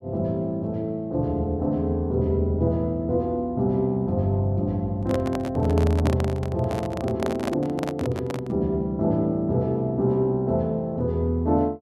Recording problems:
microphone handling noise; from 5 to 8.5 s; peak 0 dB vs average level

